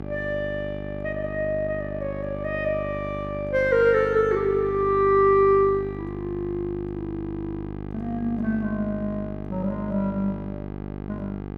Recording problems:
hum; 50 Hz, harmonics up to 1.6 kHz, SNR 9 dB

